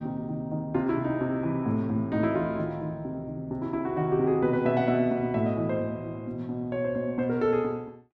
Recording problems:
none

